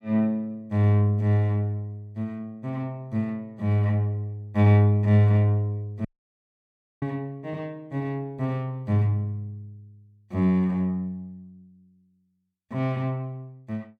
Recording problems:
audio cutting out; at 6 s for 1 s

